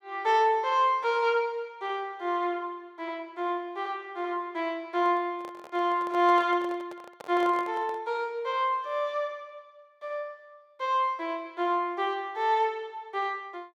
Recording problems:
handling noise; from 5 to 8 s; peak -10 dB vs average level

